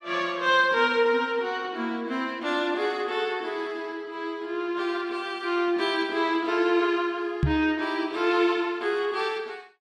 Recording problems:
knock on the microphone; at 7.5 s; peak +6 dB vs average level

